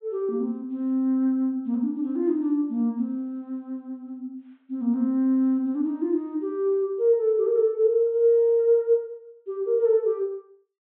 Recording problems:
treble cut off; nothing above 4 kHz

